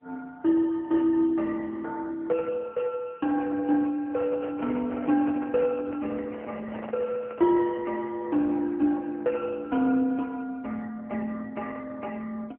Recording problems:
telephone audio; 240 Hz to 2.6 kHz, AMR-NB
handling noise; from 4 to 7.5 s; peak -7 dB vs average level

